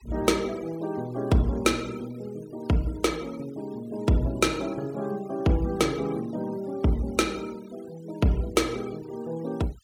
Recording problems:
noise reduction artefacts; signal-to-artefact ratio 22 dB

